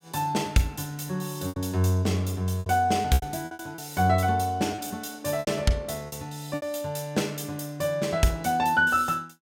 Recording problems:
lost packets; 7% of the sound replaced, filled with repeated pitch periods

